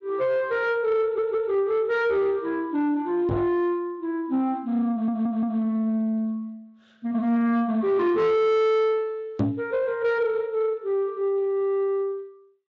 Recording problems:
lossy compression; Speex, log-spectral distance 2 dB
distorted audio; soft clipping, signal-to-distortion ratio 10 dB
audio stuttering; at 1 s and at 5 s
microphone thump; at 3.5 s and at 9.5 s; peak +3 dB vs average level

